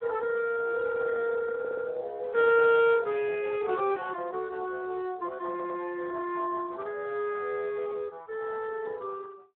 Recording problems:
phone line; 240 Hz to 3.7 kHz, Speex
stutter; at 1.5 s and at 5.5 s

